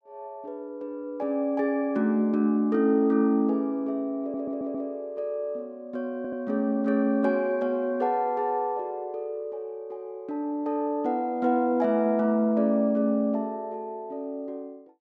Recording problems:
audio stuttering; at 4 s and at 6 s

